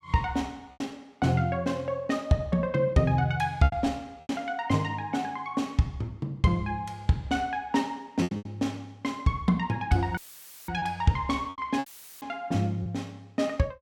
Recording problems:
packet loss; 5% of the sound replaced, filled with repeated pitch periods
dropout; at 10 s for 0.5 s and at 12 s; filled with static

